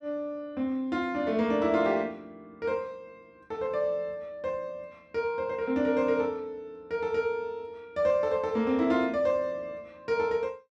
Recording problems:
none

